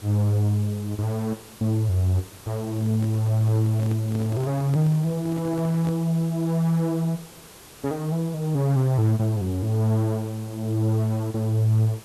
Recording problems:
background hiss; slope -3 dB per octave, SNR 20 dB
handling noise; from 2.5 to 6 s; peak -8 dB vs average level

